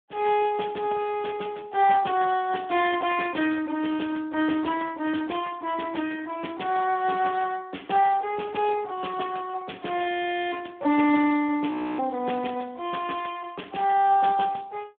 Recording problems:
telephone audio; 220 Hz to 3.5 kHz, Speex
audio freezing; at 10 s and at 12 s

